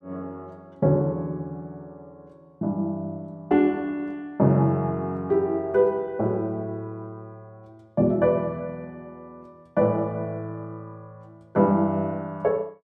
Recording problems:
none

